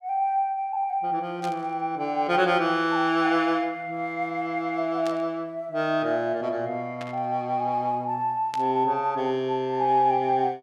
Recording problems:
burst of static; 4 times, first at 1.5 s; peak -8 dB vs average level

